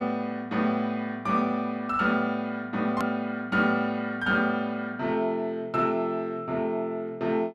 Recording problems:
click at an edit; at 3 s

